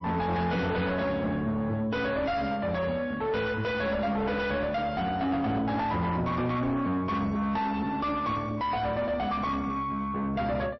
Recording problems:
lossy codec; MP3, log-spectral distance 2 dB, nothing above 5.7 kHz
distortion; soft clipping, signal-to-distortion ratio 6 dB

